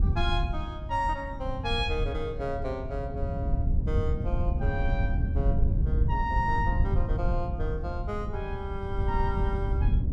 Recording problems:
wind noise; below 96 Hz, SNR -3 dB

